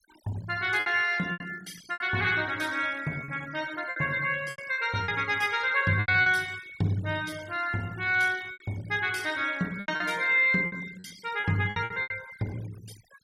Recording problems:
noise reduction artefacts; signal-to-artefact ratio 20 dB
packet loss; 10% of the sound replaced, filled with repeated pitch periods

